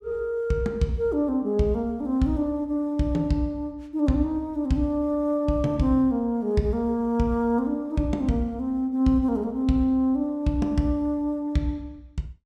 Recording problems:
none

